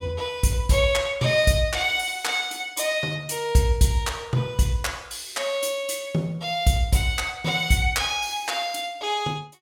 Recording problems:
none

